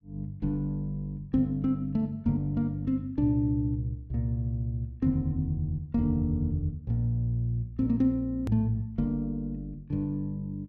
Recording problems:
hard cut with a click; at 8.5 s

